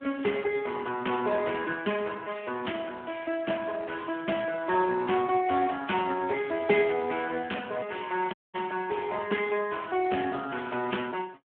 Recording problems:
phone line; 220 Hz to 3.2 kHz, Speex
dropout; at 8.5 s

